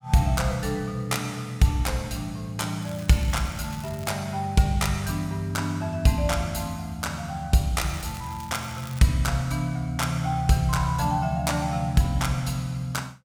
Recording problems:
crackling; from 3 to 4 s and from 8 to 9 s; loose cable, SNR 20 dB

